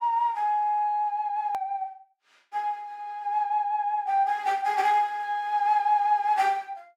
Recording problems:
edit click; at 1.5 s

